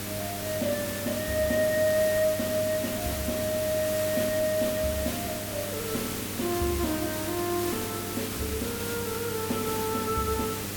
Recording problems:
hum; 50 Hz, harmonics up to 1.3 kHz, SNR 10 dB
background hiss; SNR 4 dB

